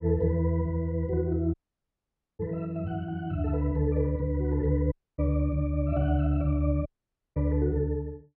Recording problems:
low-pass filter; nothing above 5.4 kHz
audio cutting out; at 1.5 s for 1 s, at 5 s and at 7 s for 0.5 s

